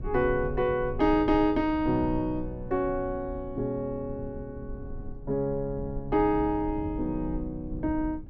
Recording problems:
rumble; below 96 Hz, SNR 12 dB

